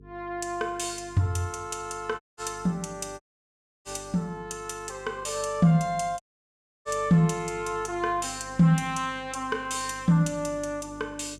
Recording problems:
hum; 50 Hz, harmonics up to 450 Hz, SNR 22 dB
audio cutting out; at 2 s, at 3 s for 0.5 s and at 6 s for 0.5 s

